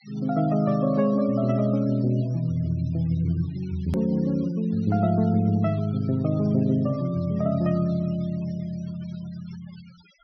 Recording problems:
treble cut off; nothing above 6 kHz
noise reduction artefacts; signal-to-artefact ratio 26 dB
click at an edit; at 4 s

